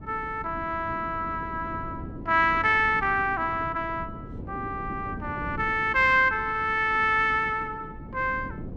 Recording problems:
wind on the microphone; below 300 Hz, SNR 15 dB

